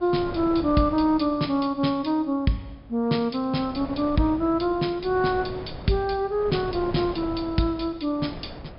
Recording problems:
low-pass filter; nothing above 5.5 kHz
wind on the microphone; below 630 Hz, SNR 14 dB

